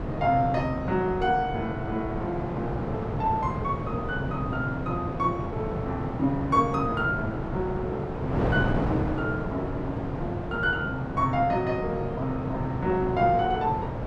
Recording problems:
wind noise; below 580 Hz, SNR 3 dB

